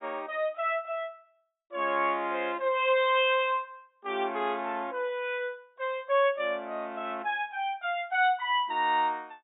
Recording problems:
treble cut off; nothing above 4 kHz

